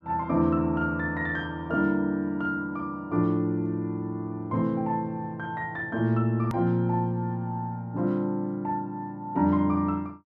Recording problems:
click at an edit; at 6.5 s

